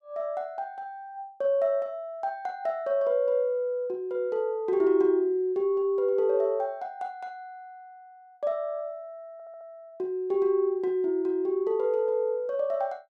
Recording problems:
audio stuttering; at 9.5 s

